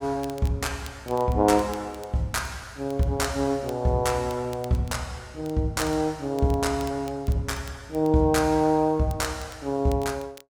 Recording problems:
crackling; vinyl, SNR 24 dB

